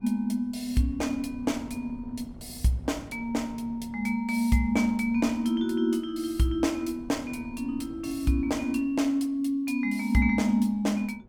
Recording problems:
wind on the microphone; below 230 Hz, SNR 21 dB

